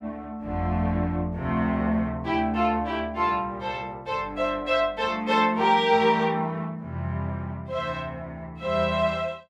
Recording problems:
none

